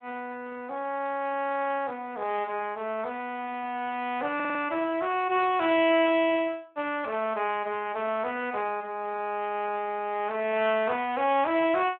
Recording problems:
telephone audio; 280 Hz to 3.3 kHz, Speex
audio stuttering; at 4.5 s

